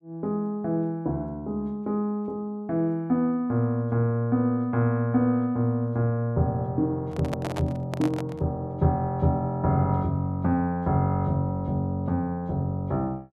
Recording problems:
handling noise; from 7 to 8.5 s; peak -2 dB vs average level

